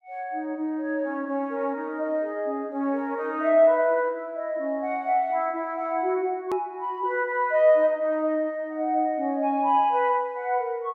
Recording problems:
click at an edit; at 6.5 s

